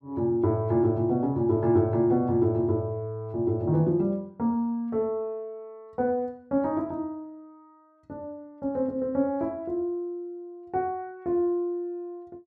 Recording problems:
none

